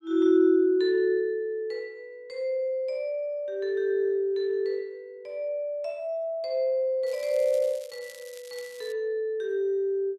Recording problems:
crackle; from 7 to 9 s; loose cable, SNR 22 dB

